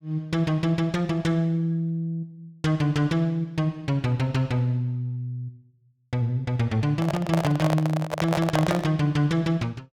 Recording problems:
microphone handling noise; from 7 to 9 s; peak +3 dB vs average level

